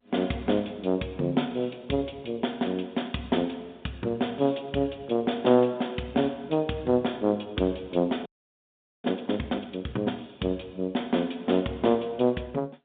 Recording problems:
phone line; 130 Hz to 3.7 kHz, G.711
frozen audio; at 8.5 s for 1 s

